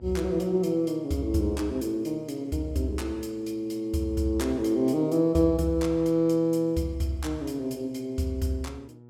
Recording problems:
mains hum; 60 Hz, harmonics up to 960 Hz, SNR 22 dB

